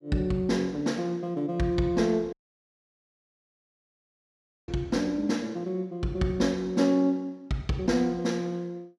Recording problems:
audio cutting out; at 2.5 s for 2.5 s

